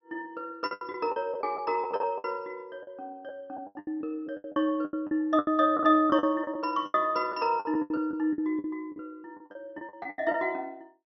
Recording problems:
treble cut off; nothing above 6 kHz
packet loss; 16% of the sound replaced, filled with the last packet

